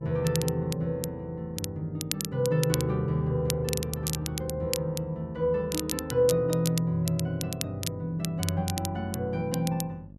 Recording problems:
electrical hum; 50 Hz, harmonics up to 600 Hz, SNR 22 dB
crackling; vinyl, SNR 7 dB

